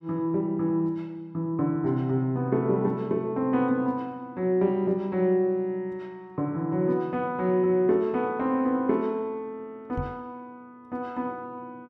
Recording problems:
microphone bump; at 10 s; peak -2 dB vs average level

